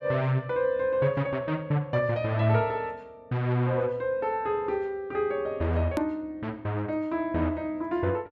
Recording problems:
hard cut with a click; at 6 s

